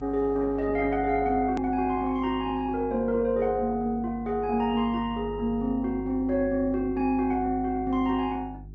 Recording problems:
treble missing; nothing above 7.8 kHz
lossy compression; Opus, log-spectral distance 2 dB
hum; 50 Hz, harmonics up to 400 Hz, SNR 15 dB
hard cut with a click; at 1.5 s

